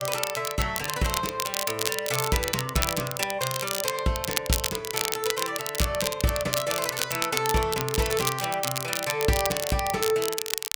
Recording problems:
crackle; vinyl, SNR 2 dB

